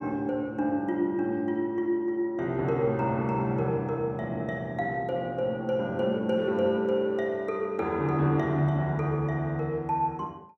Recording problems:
none

